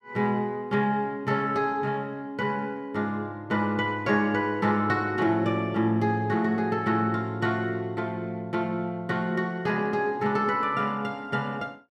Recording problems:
none

